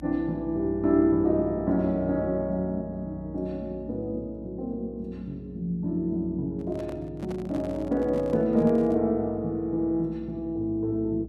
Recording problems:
hum; 60 Hz, harmonics up to 300 Hz, SNR 18 dB
handling noise; from 6.5 to 9 s; peak -9 dB vs average level

